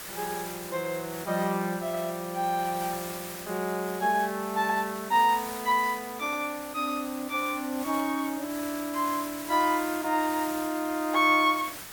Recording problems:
background hiss; slope -1 dB per octave, SNR 11 dB

